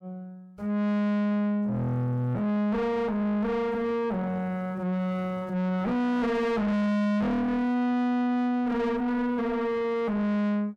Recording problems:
distorted audio; soft clipping, signal-to-distortion ratio 5 dB

